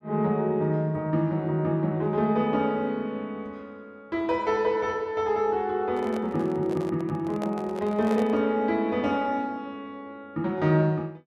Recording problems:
handling noise; from 6 to 8.5 s; peak -4 dB vs average level

